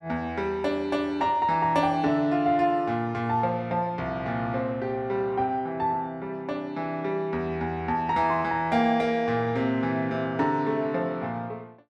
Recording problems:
none

